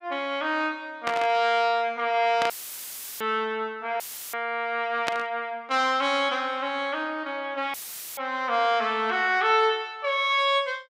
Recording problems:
static burst; at 1 s, at 2.5 s and at 5 s; peak +2 dB vs average level
audio cutting out; at 2.5 s for 0.5 s, at 4 s and at 7.5 s; filled with static

